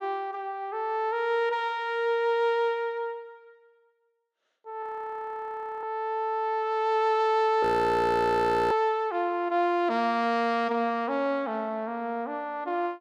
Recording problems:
frozen audio; at 5 s for 1 s and at 7.5 s for 1 s

